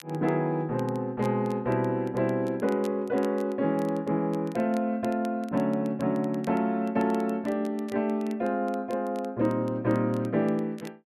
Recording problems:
crackling; vinyl, SNR 26 dB

